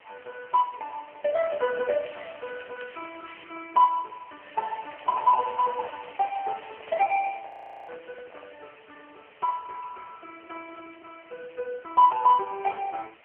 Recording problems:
telephone audio; 370 Hz to 3 kHz, AMR-NB
background hiss; SNR 26 dB
crackling; from 1.5 to 3.5 s and from 4.5 to 7 s; loose cable, SNR 21 dB
microphone handling noise; from 4.5 to 8.5 s; peak -12 dB vs average level
frozen audio; at 7.5 s

